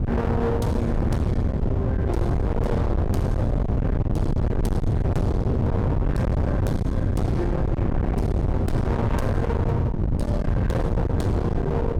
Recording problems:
distorted audio; hard clipping, signal-to-distortion ratio 7 dB
wind noise; below 240 Hz, SNR -3 dB

